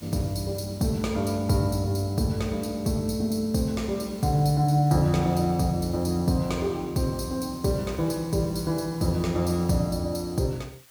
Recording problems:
hiss; slope +1 dB per octave, SNR 25 dB

